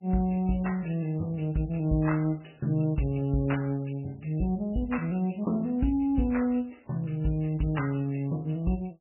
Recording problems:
lossy compression; MP3, log-spectral distance 4 dB, nothing above 2.7 kHz

